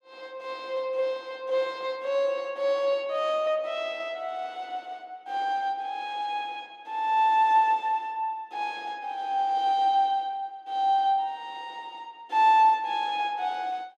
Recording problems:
none

